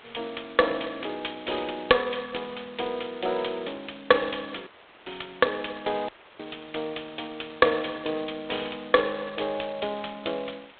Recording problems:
telephone audio; 320 Hz to 3.7 kHz, G.726
background hiss; SNR 23 dB
audio cutting out; at 4.5 s and at 6 s

